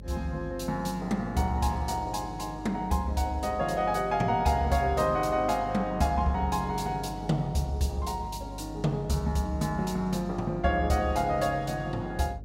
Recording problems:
hum; 50 Hz, harmonics up to 600 Hz, SNR 15 dB

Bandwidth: 16 kHz